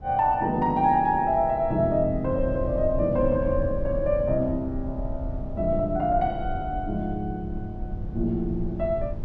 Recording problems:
rumble; below 100 Hz, SNR 10 dB

